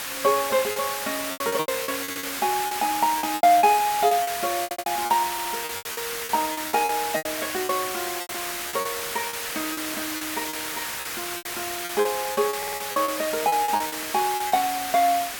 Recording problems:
hiss; SNR 4 dB
lost packets; 14% of the sound replaced, filled with repeated pitch periods
audio stuttering; 4 times, first at 2 s

